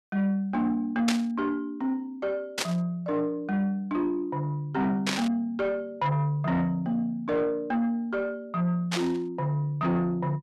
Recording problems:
distortion; soft clipping, signal-to-distortion ratio 11 dB
burst of static; 4 times, first at 1 s; peak +4 dB vs average level

